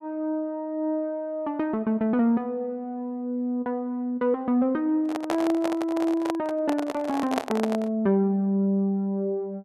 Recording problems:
microphone handling noise; from 5 to 8 s; peak +3 dB vs average level

